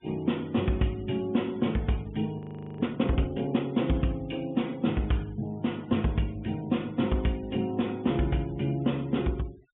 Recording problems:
low-pass filter; nothing above 3.5 kHz
denoising artefacts; signal-to-artefact ratio 26 dB
frozen audio; at 2.5 s

